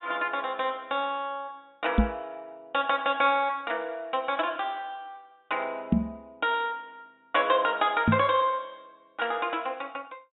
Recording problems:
treble cut off; nothing above 3.7 kHz
knock on the microphone; at 2 s, at 6 s and at 8 s; peak +9 dB vs average level

